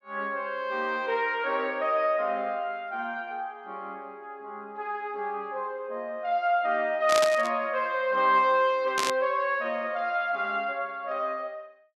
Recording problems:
burst of static; at 7 s and at 9 s; peak +3 dB vs average level

